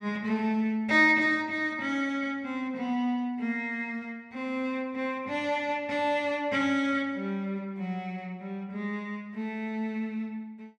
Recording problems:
none

